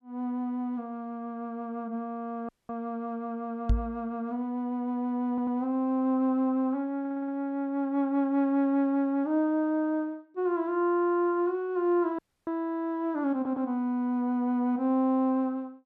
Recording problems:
dropout; at 2.5 s and at 12 s
microphone bump; at 3.5 s; peak +6 dB vs average level
audio stuttering; at 5.5 s, at 7 s and at 13 s

